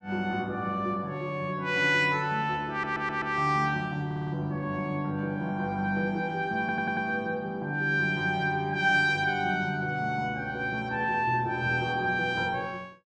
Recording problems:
stutter; at 2.5 s, at 4 s and at 6.5 s

